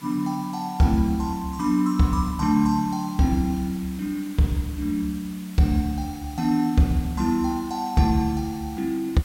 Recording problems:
background hiss; slope -1 dB per octave, SNR 21 dB

